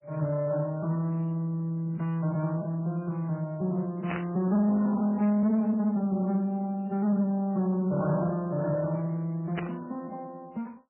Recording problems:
codec artefacts; Speex, then MP3, log-spectral distance 2 dB, nothing above 8.2 kHz
distortion; soft clipping, signal-to-distortion ratio 11 dB
static burst; at 4 s and at 9.5 s; peak -2 dB vs average level

